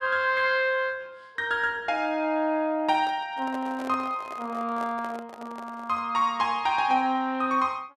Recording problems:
handling noise; from 3 to 6 s; peak -9 dB vs average level

